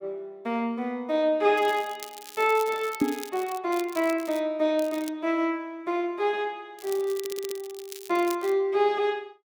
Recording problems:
crackling; 4 times, first at 1.5 s; loose cable, SNR 16 dB
microphone bump; at 3 s; peak +7 dB vs average level
stutter; at 7 s

